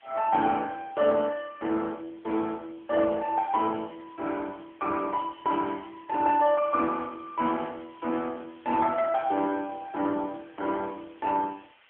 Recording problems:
telephone audio; 240 Hz to 3 kHz, AMR-NB
hiss; SNR 29 dB

